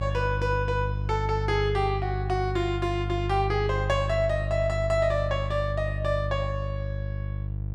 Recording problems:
electrical hum; 50 Hz, harmonics up to 350 Hz, SNR 3 dB

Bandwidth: 12.5 kHz